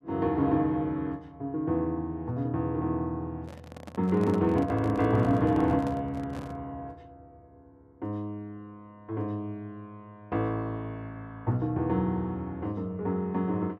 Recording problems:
handling noise; from 3.5 to 6.5 s; peak -6 dB vs average level

